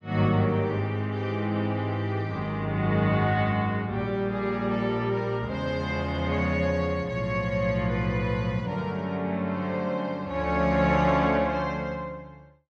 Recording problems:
none

